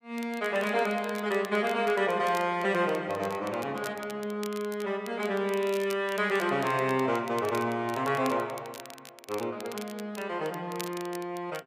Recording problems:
crackle; vinyl, SNR 17 dB

